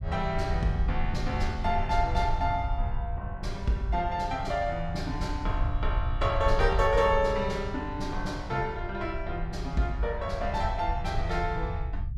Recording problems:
low-frequency rumble; below 80 Hz, SNR 4 dB

